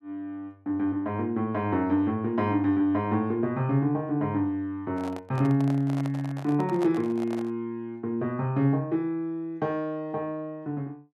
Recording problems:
microphone handling noise; from 5 to 7.5 s; peak -5 dB vs average level

